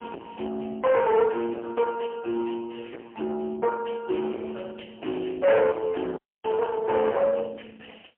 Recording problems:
telephone audio; 300 Hz to 3 kHz, AMR-NB, then MP3
distortion; soft clipping, signal-to-distortion ratio 8 dB
dropout; at 6 s

